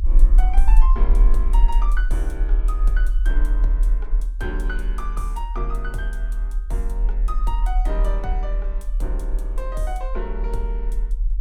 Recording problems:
low-frequency rumble; below 40 Hz, strongest tone 38 Hz, SNR -10 dB

